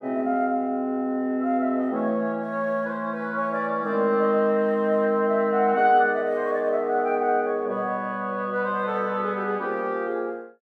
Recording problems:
none

